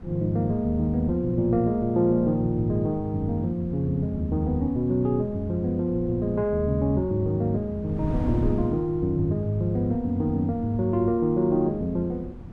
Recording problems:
wind noise; below 200 Hz, SNR 13 dB

